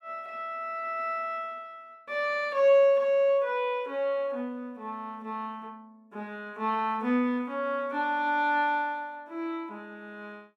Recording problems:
none

